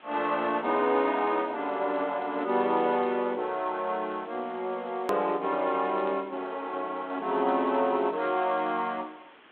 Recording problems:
telephone audio; 190 Hz to 3.9 kHz, G.726
hiss; SNR 26 dB
edit click; at 5 s

